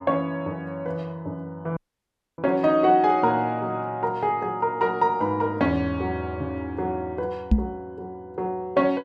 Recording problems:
dropout; at 2 s for 0.5 s
knock on the microphone; at 7.5 s; peak +9 dB vs average level

